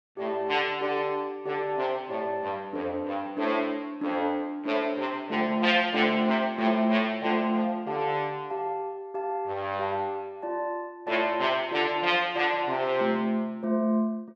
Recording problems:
none

